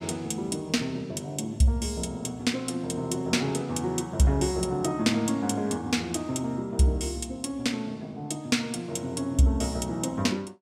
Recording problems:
none

